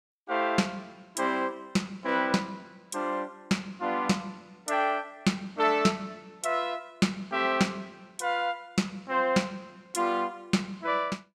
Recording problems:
none

